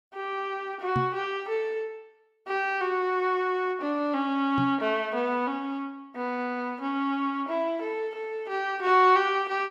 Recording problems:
knock on the microphone; at 1 s and at 4.5 s; peak +1 dB vs average level

